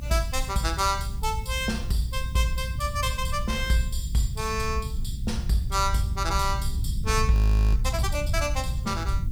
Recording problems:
hiss; slope +4 dB per octave, SNR 27 dB
rumble; below 100 Hz, SNR 3 dB
frozen audio; at 7.5 s

